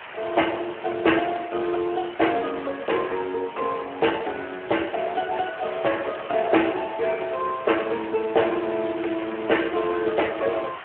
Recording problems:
telephone audio; 280 Hz to 3.3 kHz, Speex
background hiss; SNR 14 dB

